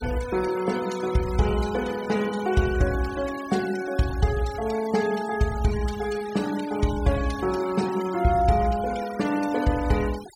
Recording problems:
denoising artefacts; signal-to-artefact ratio 15 dB

